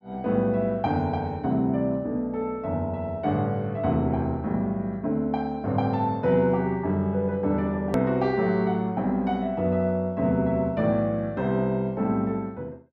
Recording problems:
edit click; at 8 s

